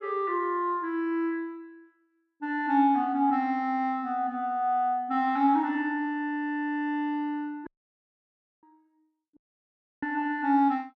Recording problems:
dropout; at 7.5 s for 1 s and at 9.5 s for 0.5 s

